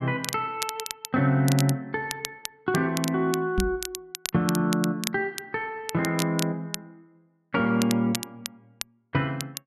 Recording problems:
crackle; vinyl, SNR 9 dB
knock on the microphone; at 3.5 s; peak +4 dB vs average level

